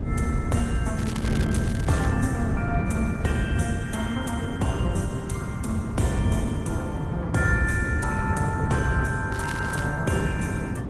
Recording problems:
codec artefacts; AAC, then Opus, log-spectral distance 3 dB, nothing above 15.5 kHz
low-frequency rumble; below 170 Hz, SNR -1 dB
wind on the microphone; below 240 Hz, SNR 3 dB
crackling; from 1 to 2 s and at 9.5 s; loose cable, SNR 12 dB

